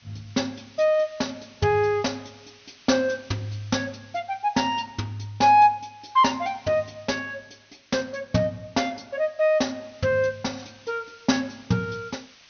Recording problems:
treble cut off; nothing above 6.2 kHz
background hiss; slope +2 dB per octave, SNR 26 dB

